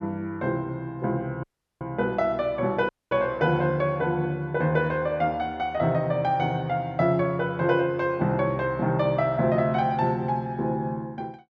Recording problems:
dropout; at 1.5 s and at 3 s

